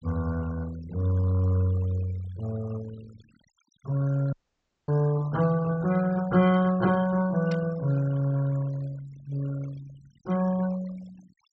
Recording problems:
low-pass filter; nothing above 8 kHz
noise reduction artefacts; signal-to-artefact ratio 20 dB
audio cutting out; at 4.5 s for 0.5 s
burst of static; at 7.5 s; peak -11 dB vs average level

